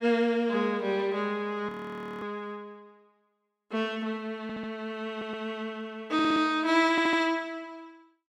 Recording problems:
audio freezing; at 1.5 s for 0.5 s
audio stuttering; 4 times, first at 4.5 s

